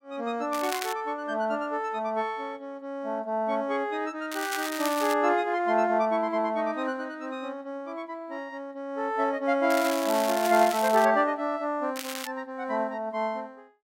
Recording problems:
crackling; 4 times, first at 0.5 s; loose cable, SNR 9 dB

